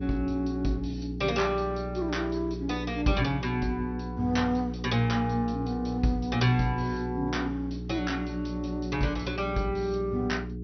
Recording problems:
codec artefacts; MP2, log-spectral distance 3 dB, nothing above 6 kHz
mains hum; 60 Hz, harmonics up to 420 Hz, SNR 7 dB

